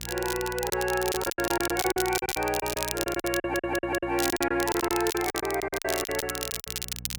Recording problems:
mains hum; 60 Hz, harmonics up to 540 Hz, SNR 16 dB
crackle; vinyl, SNR 5 dB
lost packets; 16% of the sound replaced, filled with silence
stutter; at 3.5 s

